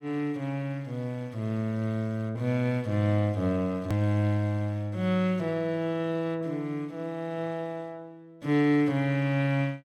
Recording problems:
hard cut with a click; at 4 s

